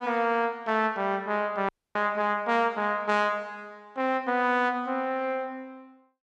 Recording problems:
audio cutting out; at 1.5 s

